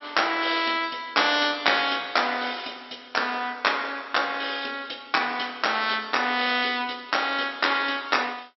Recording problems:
treble cut off; nothing above 5.6 kHz

